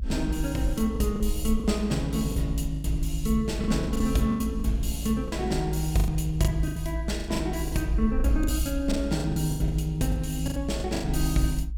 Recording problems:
rumble; below 58 Hz, SNR 5 dB
lost packets; 12% of the sound replaced, filled with the last packet

